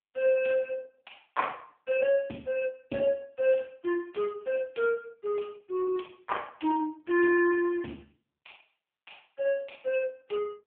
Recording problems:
telephone audio; 240 Hz to 3.3 kHz, AMR-NB

